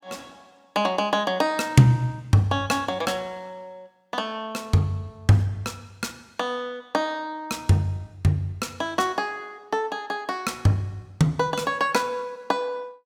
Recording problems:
none

